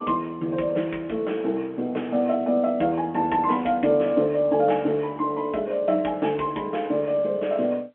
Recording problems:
telephone audio; 220 Hz to 3.4 kHz, G.711

